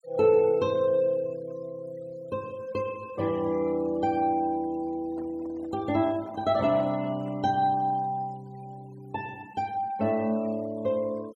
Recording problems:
noise reduction artefacts; signal-to-artefact ratio 26 dB
microphone handling noise; from 5 to 7.5 s; peak -12 dB vs average level

